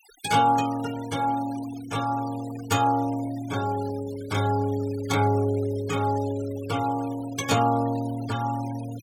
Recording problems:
noise reduction artefacts; signal-to-artefact ratio 17 dB

